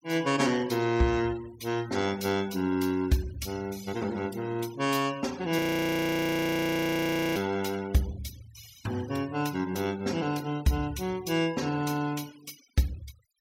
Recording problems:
noise reduction artefacts; signal-to-artefact ratio 19 dB
audio freezing; at 5.5 s for 2 s

